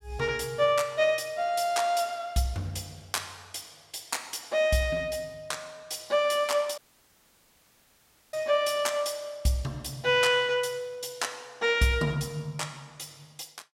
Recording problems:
dropout; at 7 s for 1.5 s

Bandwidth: 16 kHz